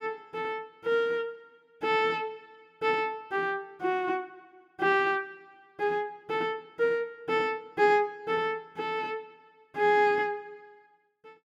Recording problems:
none

